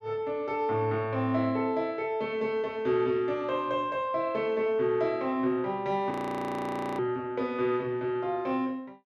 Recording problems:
frozen audio; at 6 s for 1 s

